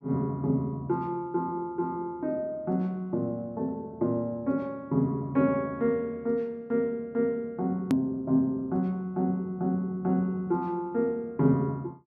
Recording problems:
click at an edit; at 8 s

